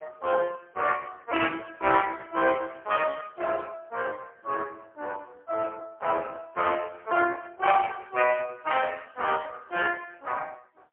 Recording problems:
phone line; 280 Hz to 3.1 kHz, AMR-NB, then MP3

